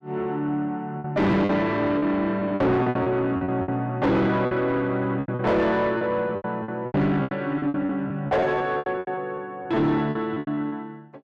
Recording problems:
distorted audio; soft clipping, signal-to-distortion ratio 7 dB
packet loss; 15% of the sound replaced, filled with repeated pitch periods

